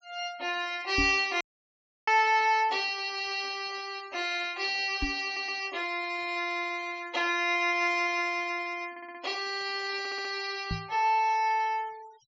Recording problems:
treble missing; nothing above 7.4 kHz
noise reduction artefacts; signal-to-artefact ratio 22 dB
microphone thump; at 1 s, at 5 s and at 11 s; peak 0 dB vs average level
dropout; at 1.5 s for 0.5 s
stutter; at 5.5 s, at 9 s and at 10 s

